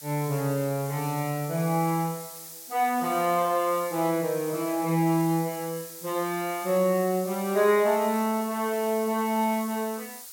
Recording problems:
background hiss; SNR 13 dB

